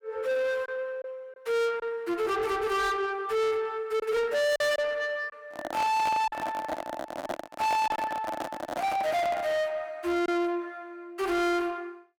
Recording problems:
distortion; soft clipping, signal-to-distortion ratio 7 dB
lost packets; 2% of the sound replaced, filled with silence
handling noise; from 5.5 to 9.5 s; peak +1 dB vs average level

